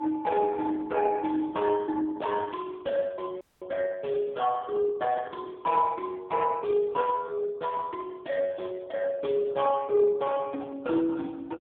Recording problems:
telephone audio; 170 Hz to 2.3 kHz, AMR-NB
audio cutting out; at 3.5 s

